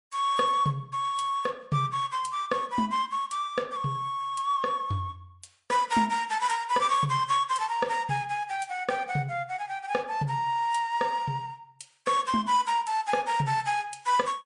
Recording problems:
lossy compression; MP3, log-spectral distance 2 dB, nothing above 10.1 kHz

